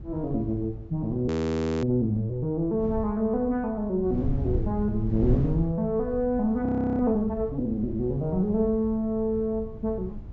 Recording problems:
treble missing; nothing above 8 kHz
wind noise; below 120 Hz, SNR 10 dB
frozen audio; at 1.5 s for 0.5 s and at 6.5 s

